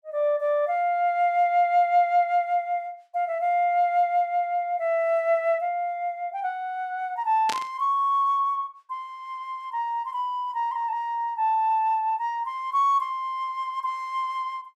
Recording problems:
static burst; at 7.5 s; peak -2 dB vs average level

